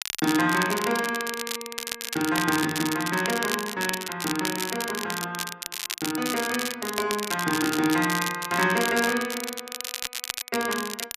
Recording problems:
crackle; vinyl, SNR 5 dB

